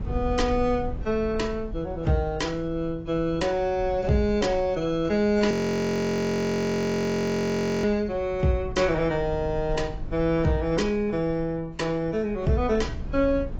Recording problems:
lossy codec; AAC, log-spectral distance 2 dB
wind noise; below 98 Hz, SNR 14 dB
audio freezing; at 5.5 s for 2.5 s

